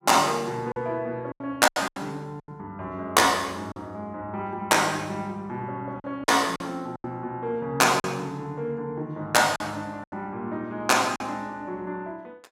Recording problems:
lost packets; 6% of the sound replaced, filled with silence

